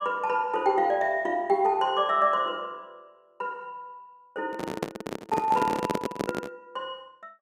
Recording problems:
microphone handling noise; from 4.5 to 6.5 s; peak +2 dB vs average level

